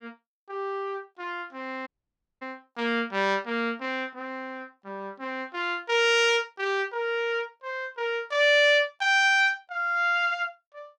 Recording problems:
audio cutting out; at 2 s for 0.5 s

